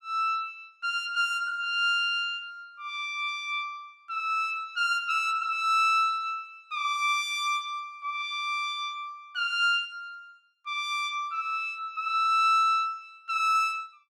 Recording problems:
none

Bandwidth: 16.5 kHz